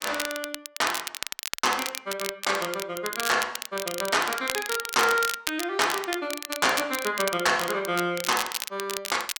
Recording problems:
crackle; vinyl, SNR 6 dB

